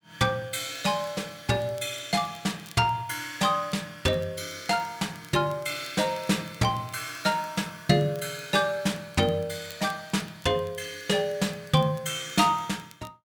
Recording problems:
crackle; vinyl, SNR 27 dB

